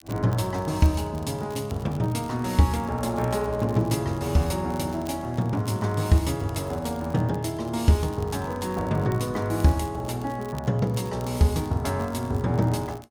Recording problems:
crackle; vinyl, SNR 25 dB

